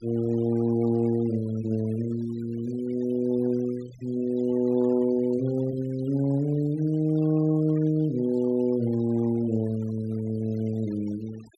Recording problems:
denoising artefacts; signal-to-artefact ratio 24 dB

